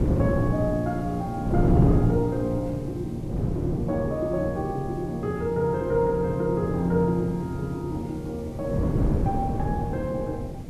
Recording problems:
background hiss; SNR 28 dB
wind on the microphone; below 270 Hz, SNR 2 dB

